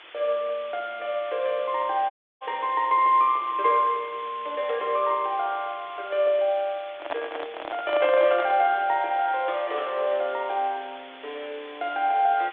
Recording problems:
phone line; 300 Hz to 3.6 kHz, G.726
background hiss; SNR 20 dB
dropout; at 2 s
microphone handling noise; from 7 to 8.5 s; peak -1 dB vs average level

